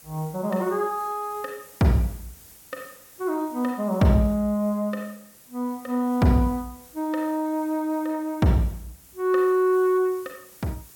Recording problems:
background hiss; SNR 23 dB

